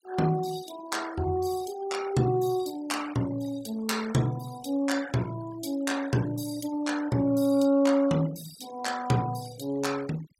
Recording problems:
noise reduction artefacts; signal-to-artefact ratio 18 dB

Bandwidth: 16 kHz